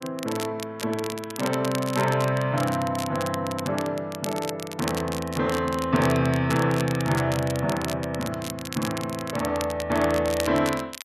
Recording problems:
crackle; vinyl, SNR 11 dB

